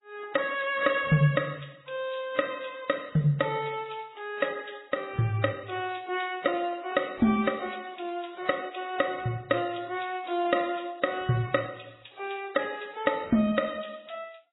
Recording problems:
lossy compression; AAC, then MP3, log-spectral distance 6 dB, nothing above 3.8 kHz

